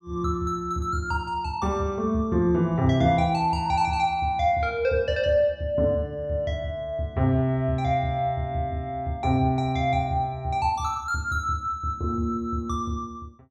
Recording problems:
none

